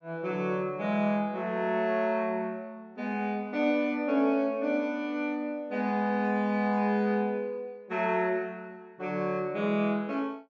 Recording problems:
low-pass filter; nothing above 8 kHz

